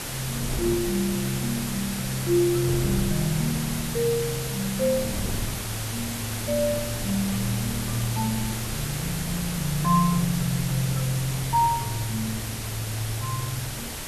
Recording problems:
hiss; slope -2 dB per octave, SNR 5 dB
wind noise; below 200 Hz, SNR 11 dB

